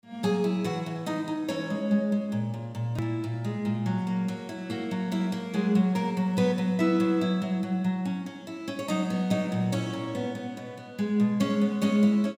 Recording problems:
edit click; at 3 s

